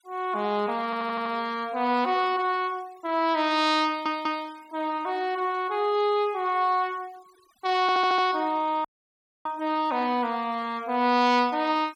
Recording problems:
noise reduction artefacts; signal-to-artefact ratio 26 dB
stutter; at 1 s, at 4 s and at 8 s
audio cutting out; at 9 s for 0.5 s

